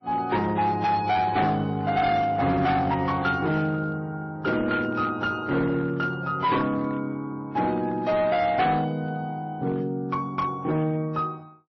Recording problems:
lossy codec; AAC, then MP3, log-spectral distance 2 dB, nothing above 5.8 kHz
distortion; hard clipping, uneven, signal-to-distortion ratio 11 dB

